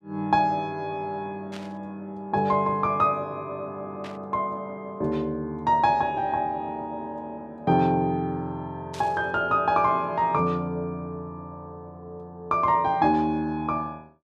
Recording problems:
static burst; at 1.5 s, at 4 s and at 9 s; peak -11 dB vs average level

